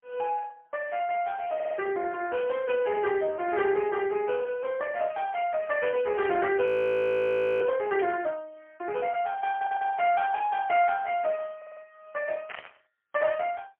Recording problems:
telephone audio; 340 Hz to 3.2 kHz, AMR-NB, then MP3
audio stuttering; at 1.5 s, at 9.5 s and at 12 s
audio freezing; at 6.5 s for 1 s
static burst; at 8 s and at 12 s; peak -6 dB vs average level

